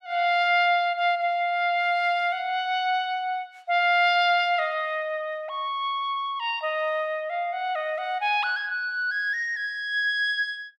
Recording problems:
none

